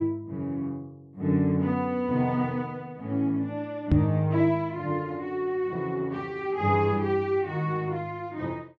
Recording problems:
microphone thump; at 4 s; peak +9 dB vs average level

